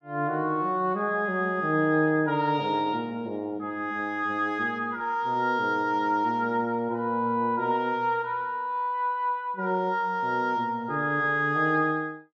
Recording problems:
none

